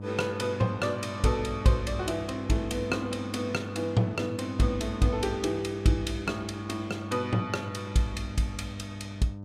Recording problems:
hum; 50 Hz, harmonics up to 900 Hz, SNR 10 dB

